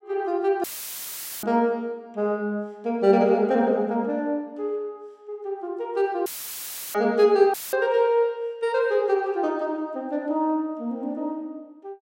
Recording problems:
audio cutting out; at 0.5 s for 1 s, at 6.5 s for 0.5 s and at 7.5 s; filled with static

